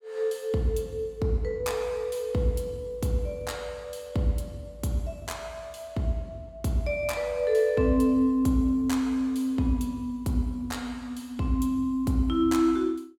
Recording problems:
none

